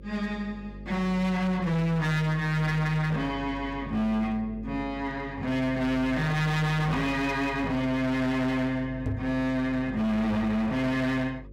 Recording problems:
distortion; hard clipping, signal-to-distortion ratio 8 dB
hum; 50 Hz, harmonics up to 550 Hz, SNR 16 dB
microphone bump; at 9 s; peak +1 dB vs average level

